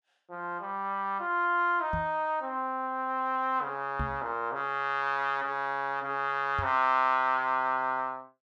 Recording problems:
knock on the microphone; at 2 s, at 4 s and at 6.5 s; peak -1 dB vs average level

